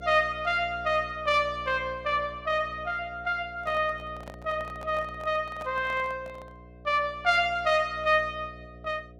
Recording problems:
hum; 60 Hz, harmonics up to 720 Hz, SNR 19 dB
microphone handling noise; from 3.5 to 6.5 s; peak -10 dB vs average level

